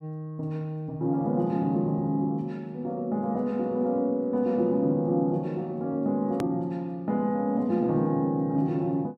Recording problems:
click at an edit; at 6.5 s

